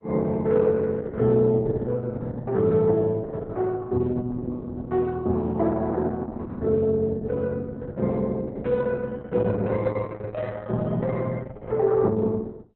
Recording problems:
codec artefacts; Opus, log-spectral distance 3 dB, nothing above 4 kHz

